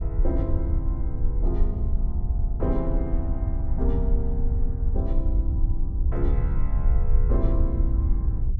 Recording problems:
low-frequency rumble; below 68 Hz, SNR -7 dB

